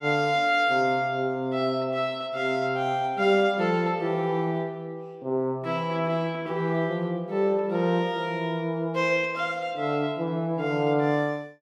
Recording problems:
none

